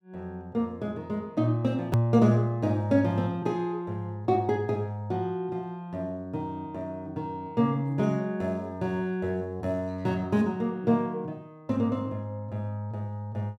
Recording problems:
click at an edit; at 2 s

